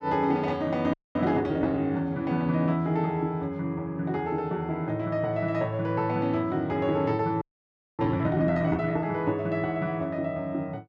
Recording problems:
audio freezing; at 1 s and at 7.5 s for 0.5 s

